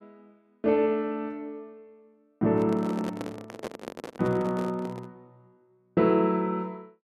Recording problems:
handling noise; from 2.5 to 5 s; peak -4 dB vs average level

